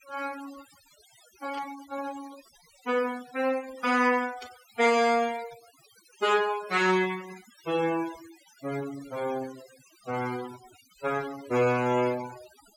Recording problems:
denoising artefacts; signal-to-artefact ratio 18 dB
static burst; at 1.5 s and at 4.5 s; peak -14 dB vs average level

